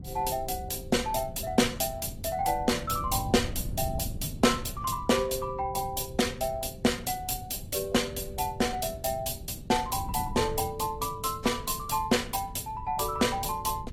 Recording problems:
lossy codec; AAC, log-spectral distance 5 dB, nothing above 15.1 kHz
wind noise; below 160 Hz, SNR 12 dB

